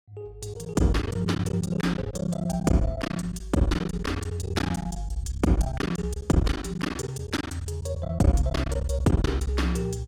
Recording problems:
lost packets; 16% of the sound replaced, filled with silence

